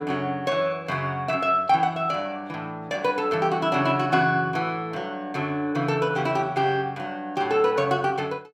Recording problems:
none

